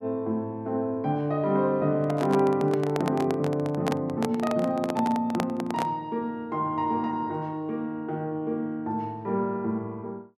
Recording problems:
handling noise; from 2 to 6 s; peak +2 dB vs average level

